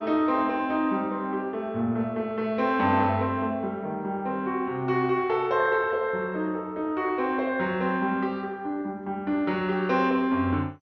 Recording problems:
codec artefacts; MP2, log-spectral distance 2 dB, nothing above 5.5 kHz

